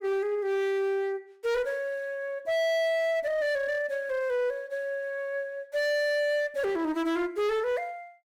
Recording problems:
distortion; hard clipping, uneven, signal-to-distortion ratio 11 dB

